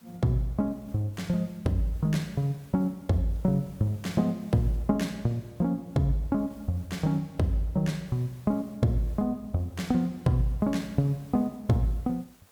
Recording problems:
hiss; slope -3 dB per octave, SNR 29 dB

